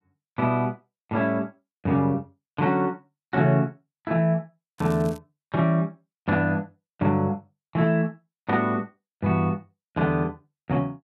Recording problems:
crackling; at 5 s; loose cable, SNR 24 dB

